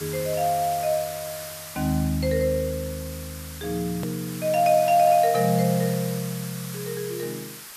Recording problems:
hiss; SNR 12 dB
edit click; at 4 s

